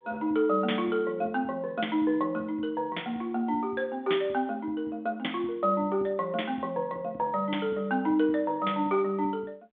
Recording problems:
telephone audio; 220 Hz to 3.6 kHz, G.726

